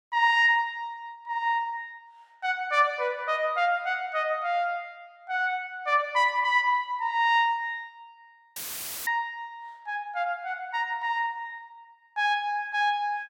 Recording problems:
dropout; at 8.5 s for 0.5 s; filled with static

